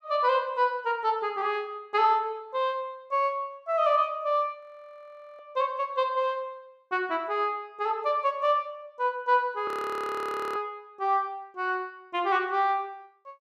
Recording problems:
frozen audio; at 4.5 s for 1 s and at 9.5 s for 1 s

